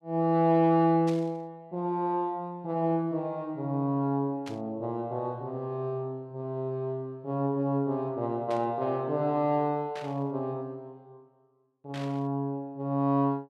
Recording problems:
burst of static; 5 times, first at 1 s; peak -10 dB vs average level

